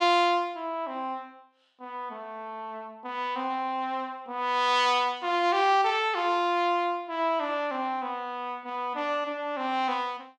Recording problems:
none

